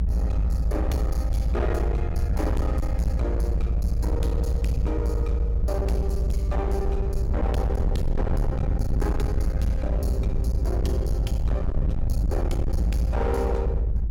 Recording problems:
distorted audio; hard clipping, uneven, signal-to-distortion ratio 6 dB
rumble; below 80 Hz, strongest tone 52 Hz, SNR -5 dB

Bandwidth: 18 kHz